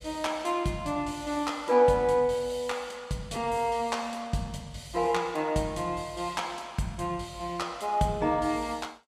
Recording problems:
none

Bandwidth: 14.5 kHz